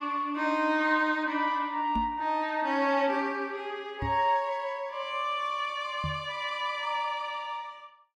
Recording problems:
microphone bump; at 2 s, at 4 s and at 6 s; peak -1 dB vs average level

